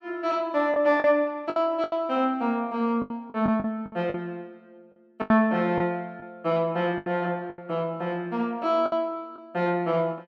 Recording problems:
lost packets; 9% of the sound replaced, filled with the last packet

